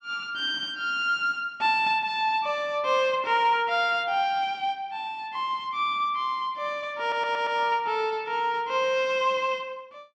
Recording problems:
stutter; at 7 s

